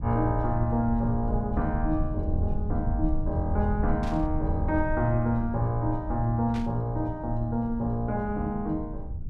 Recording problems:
low-frequency rumble; below 82 Hz, SNR 6 dB
static burst; at 4 s and at 6.5 s; peak -10 dB vs average level

